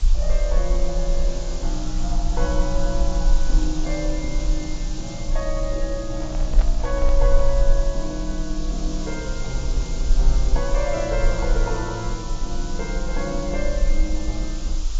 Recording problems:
codec artefacts; AAC, log-spectral distance 3 dB
hiss; SNR 9 dB
rumble; below 40 Hz, SNR -3 dB
microphone handling noise; from 6 to 7.5 s; peak -2 dB vs average level

